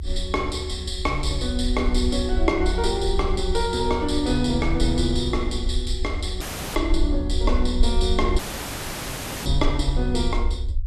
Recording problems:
low-frequency rumble; below 64 Hz, SNR 3 dB
dropout; at 6.5 s and at 8.5 s for 1 s

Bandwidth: 13.5 kHz